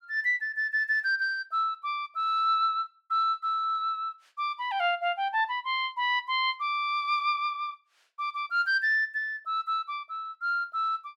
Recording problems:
none

